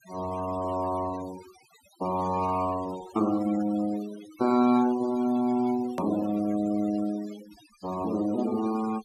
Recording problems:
noise reduction artefacts; signal-to-artefact ratio 16 dB
hard cut with a click; at 6 s

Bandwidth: 14 kHz